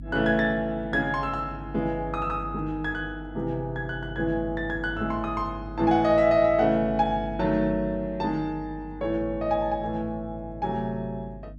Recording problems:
hum; 50 Hz, harmonics up to 300 Hz, SNR 14 dB

